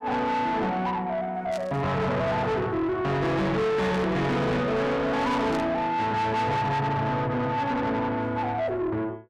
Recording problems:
distorted audio; soft clipping, signal-to-distortion ratio 5 dB
static burst; at 1.5 s, at 4 s and at 5.5 s; peak -11 dB vs average level

